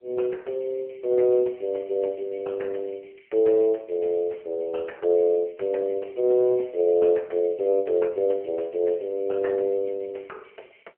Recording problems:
telephone audio; 340 Hz to 3.5 kHz, AMR-NB

